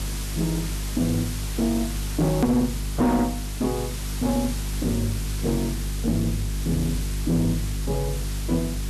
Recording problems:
codec artefacts; Vorbis, log-spectral distance 6 dB, nothing above 13.1 kHz
distorted audio; hard clipping, uneven, signal-to-distortion ratio 11 dB
mains hum; 50 Hz, harmonics up to 450 Hz, SNR 5 dB
hiss; slope 0 dB per octave, SNR 9 dB
click at an edit; at 2.5 s

